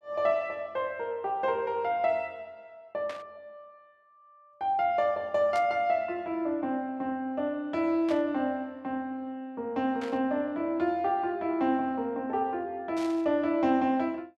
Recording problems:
static burst; 5 times, first at 3 s; peak -9 dB vs average level

